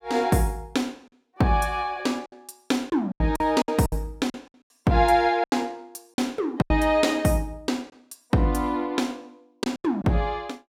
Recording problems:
lost packets; 8% of the sound replaced, filled with silence

